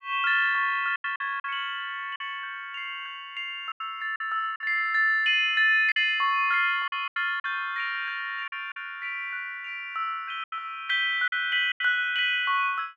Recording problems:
lost packets; 7% of the sound replaced, filled with silence

